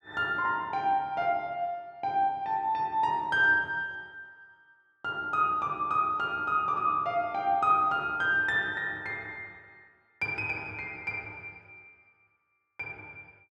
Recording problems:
none

